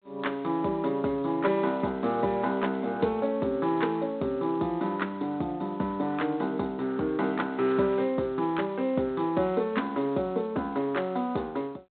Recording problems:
telephone audio; 170 Hz to 3.9 kHz, G.726

